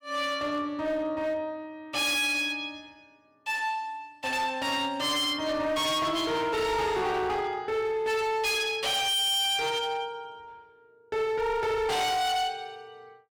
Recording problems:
distorted audio; hard clipping, signal-to-distortion ratio 8 dB

